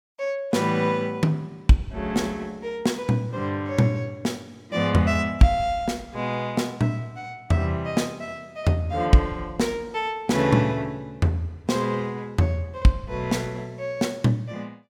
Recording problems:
none

